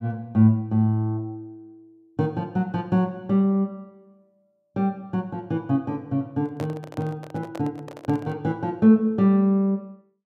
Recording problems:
handling noise; from 6.5 to 8.5 s; peak -8 dB vs average level

